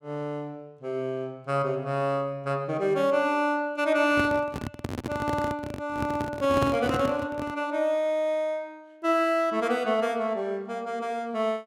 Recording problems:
microphone handling noise; from 4 to 7.5 s; peak +3 dB vs average level

